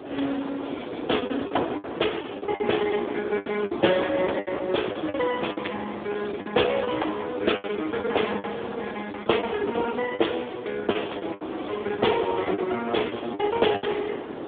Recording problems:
phone line; 240 Hz to 3.6 kHz, Speex
wind noise; below 640 Hz, SNR 10 dB
packet loss; 13% of the sound replaced, filled with the last packet

